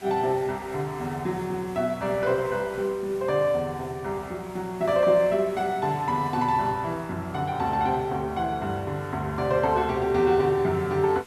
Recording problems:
hiss; SNR 23 dB

